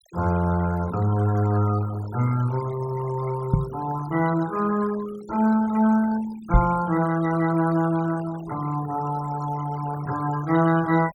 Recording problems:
denoising artefacts; signal-to-artefact ratio 17 dB
knock on the microphone; at 3.5 s and at 6.5 s; peak +8 dB vs average level

